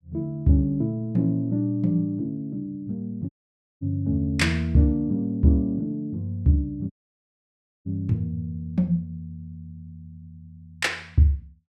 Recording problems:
audio cutting out; at 3.5 s for 0.5 s and at 7 s for 1 s

